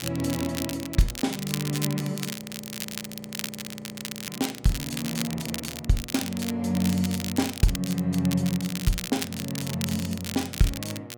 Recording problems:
electrical hum; 60 Hz, harmonics up to 2 kHz, SNR 20 dB
crackling; vinyl, SNR 7 dB
audio freezing; at 2.5 s for 2 s

